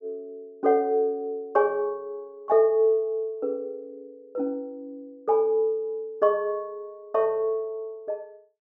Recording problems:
none

